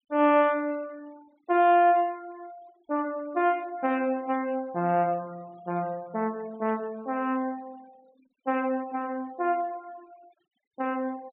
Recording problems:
treble cut off; nothing above 4 kHz
denoising artefacts; signal-to-artefact ratio 28 dB

